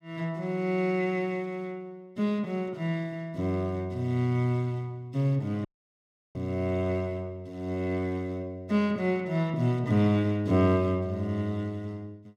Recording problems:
audio cutting out; at 5.5 s for 0.5 s

